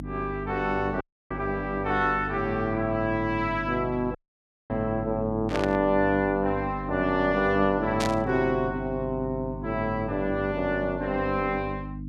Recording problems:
hum; 50 Hz, harmonics up to 300 Hz, SNR 10 dB
dropout; at 1 s and at 4 s for 0.5 s
burst of static; at 5.5 s and at 8 s; peak -1 dB vs average level

